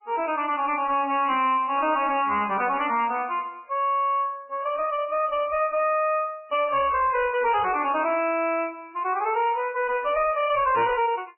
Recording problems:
codec artefacts; MP3, log-spectral distance 3 dB, nothing above 2.9 kHz
distortion; soft clipping, signal-to-distortion ratio 10 dB

